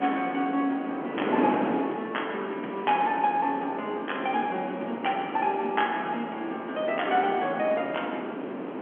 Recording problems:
phone line; 240 Hz to 3.3 kHz, G.711
wind on the microphone; below 690 Hz, SNR 5 dB

